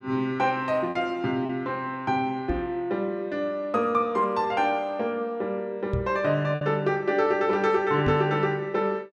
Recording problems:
lost packets; 1.5% of the sound replaced, filled with repeated pitch periods
microphone bump; at 2.5 s, at 6 s and at 8 s; peak +1 dB vs average level

